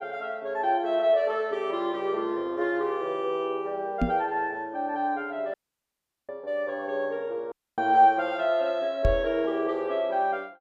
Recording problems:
microphone bump; at 4 s and at 9 s; peak +5 dB vs average level
dropout; at 5.5 s for 1 s and at 7.5 s

